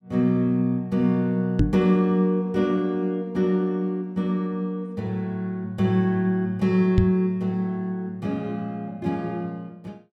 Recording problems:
microphone thump; at 1.5 s and at 7 s; peak +8 dB vs average level

